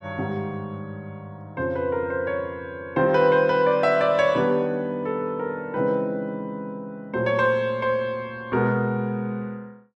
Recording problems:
none

